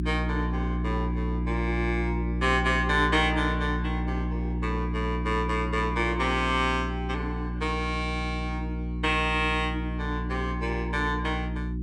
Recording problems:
hum; 60 Hz, harmonics up to 360 Hz, SNR 2 dB

